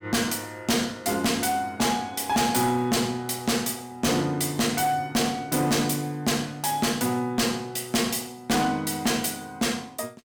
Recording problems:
distortion; hard clipping, uneven, signal-to-distortion ratio 7 dB

